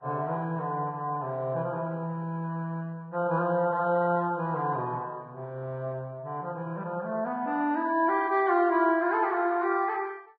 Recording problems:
lossy compression; Vorbis, log-spectral distance 2 dB

